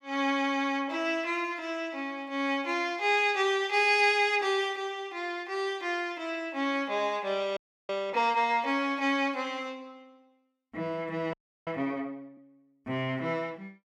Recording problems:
frozen audio; at 7.5 s and at 11 s

